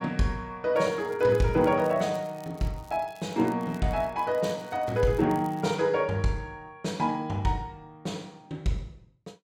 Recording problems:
crackling; from 0.5 to 6 s; loose cable, SNR 27 dB

